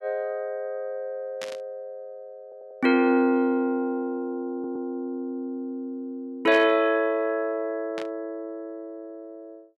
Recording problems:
static burst; at 1.5 s, at 6.5 s and at 8 s; peak -6 dB vs average level
stutter; at 2.5 s and at 4.5 s

